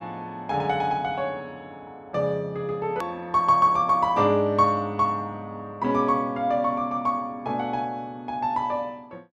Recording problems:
edit click; at 3 s

